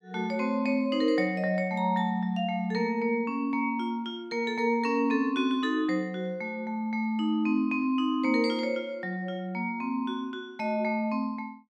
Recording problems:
none

